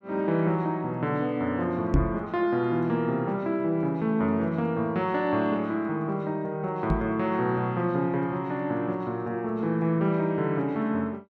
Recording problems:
knock on the microphone; at 2 s and at 7 s; peak +7 dB vs average level

